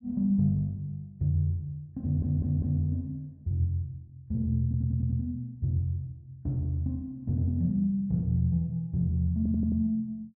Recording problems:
stutter; at 2 s, at 4.5 s and at 9.5 s

